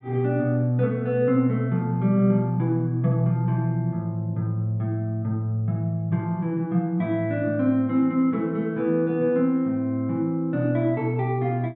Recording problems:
none

